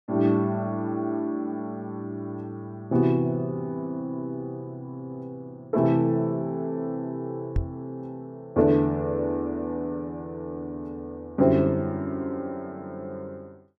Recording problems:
knock on the microphone; at 7.5 s; peak +4 dB vs average level

